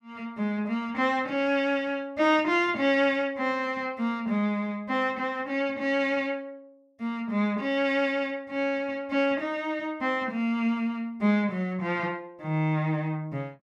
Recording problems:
none

